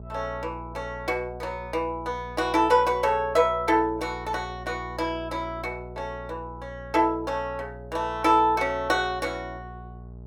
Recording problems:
hum; 60 Hz, harmonics up to 660 Hz, SNR 16 dB

